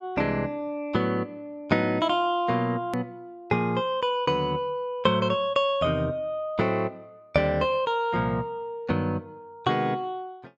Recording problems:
edit click; at 3 s

